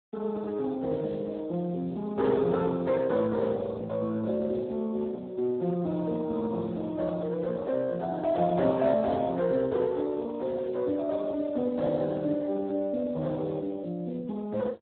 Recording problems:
telephone audio; 130 Hz to 2.1 kHz, Speex

